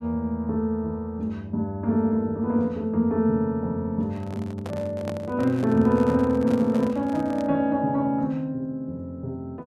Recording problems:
handling noise; from 4 to 7.5 s; peak -5 dB vs average level

